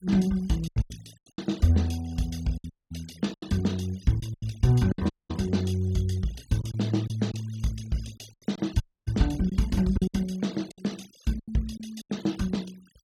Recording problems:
denoising artefacts; signal-to-artefact ratio 22 dB
lost packets; 9% of the sound replaced, filled with silence
audio cutting out; at 2.5 s, at 5 s and at 9 s

